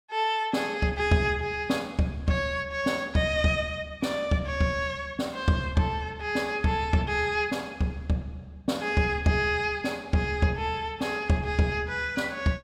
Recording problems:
none

